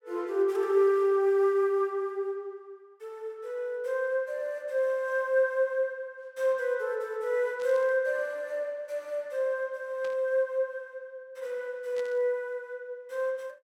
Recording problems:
burst of static; at 7.5 s, at 10 s and at 12 s; peak -14 dB vs average level

